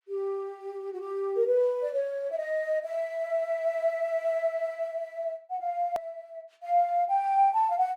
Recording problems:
click at an edit; at 6 s

